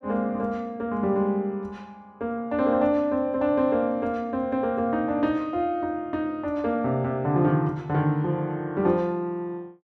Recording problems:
none

